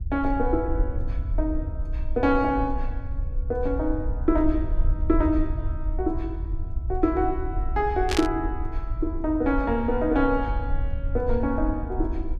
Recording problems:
rumble; below 64 Hz, SNR 4 dB
static burst; at 8 s; peak +3 dB vs average level

